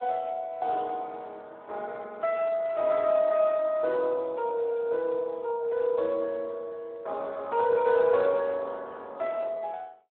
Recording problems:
phone line; 340 Hz to 3.4 kHz, Speex

